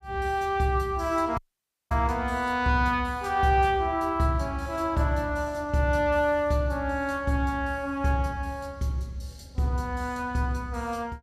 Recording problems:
dropout; at 1.5 s for 0.5 s

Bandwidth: 15.5 kHz